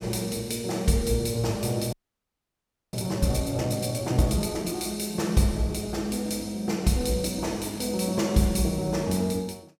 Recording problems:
frozen audio; at 2 s for 1 s

